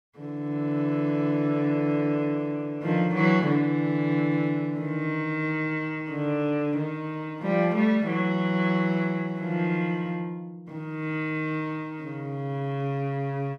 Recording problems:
none

